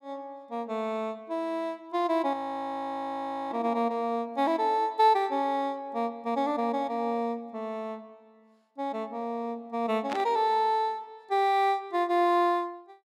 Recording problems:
audio freezing; at 2.5 s for 1 s
static burst; at 10 s; peak -4 dB vs average level

